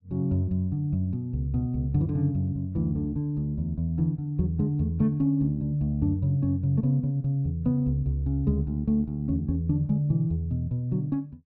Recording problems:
none

